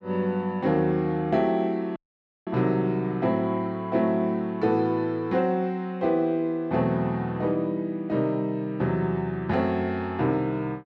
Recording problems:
dropout; at 2 s for 0.5 s

